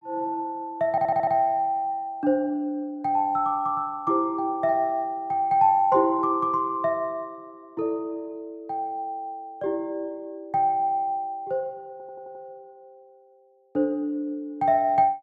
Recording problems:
audio stuttering; at 1 s and at 12 s

